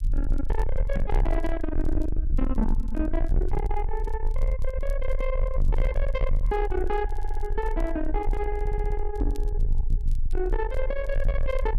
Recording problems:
distortion; soft clipping, signal-to-distortion ratio 7 dB
rumble; below 46 Hz, strongest tone 22 Hz, SNR -1 dB
crackling; vinyl, SNR 30 dB
microphone bump; at 1 s, at 3.5 s and at 9 s; peak +5 dB vs average level
audio stuttering; at 7 s and at 8.5 s

